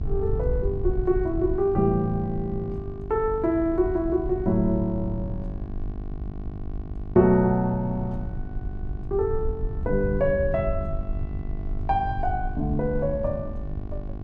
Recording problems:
hum; 50 Hz, harmonics up to 1.1 kHz, SNR 15 dB
low-frequency rumble; below 86 Hz, SNR 9 dB

